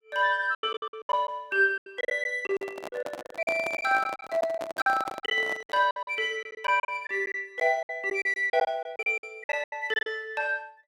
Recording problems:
packet loss; 17% of the sound replaced, filled with silence
microphone handling noise; from 2.5 to 6 s; peak -3 dB vs average level

